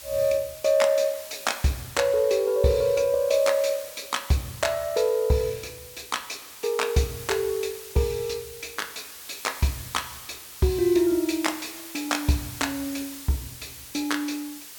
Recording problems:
hiss; slope +1 dB per octave, SNR 14 dB

